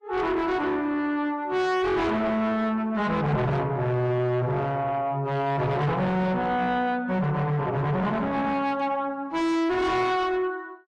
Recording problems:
lossy codec; AAC, log-spectral distance 2 dB, nothing above 10.7 kHz
distorted audio; soft clipping, signal-to-distortion ratio 7 dB

